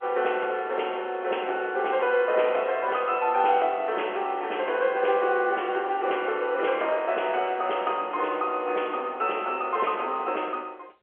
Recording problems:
telephone audio; 340 Hz to 3.3 kHz, G.711

